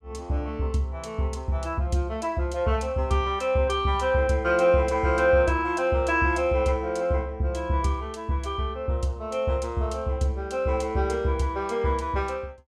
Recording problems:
none

